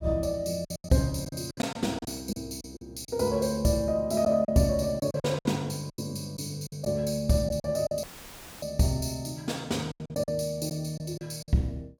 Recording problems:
lost packets; 10% of the sound replaced, filled with silence
audio cutting out; at 8 s for 0.5 s; filled with static

